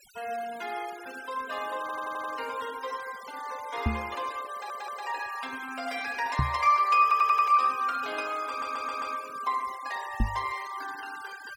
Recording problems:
noise reduction artefacts; signal-to-artefact ratio 17 dB
stutter; 4 times, first at 2 s
microphone bump; at 4 s, at 6.5 s and at 10 s; peak +6 dB vs average level

